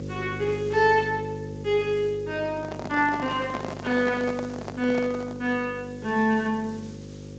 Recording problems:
lossy codec; Speex, log-spectral distance 6 dB
electrical hum; 50 Hz, harmonics up to 550 Hz, SNR 12 dB
background hiss; slope -1 dB per octave, SNR 27 dB
microphone handling noise; from 2.5 to 5.5 s; peak -3 dB vs average level

